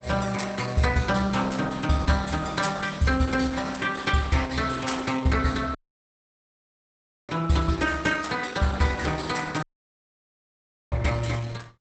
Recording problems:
lossy codec; Opus, log-spectral distance 5 dB, nothing above 8 kHz
dropout; at 6 s for 1.5 s and at 9.5 s for 1.5 s

